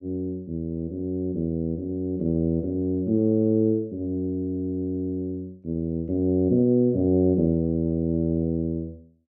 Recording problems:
none

